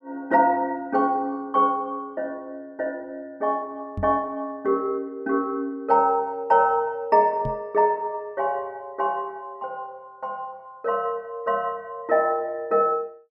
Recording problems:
knock on the microphone; at 4 s and at 7.5 s; peak -3 dB vs average level

